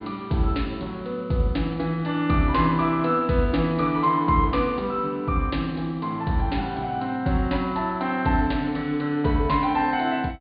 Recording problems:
treble missing; nothing above 4.5 kHz

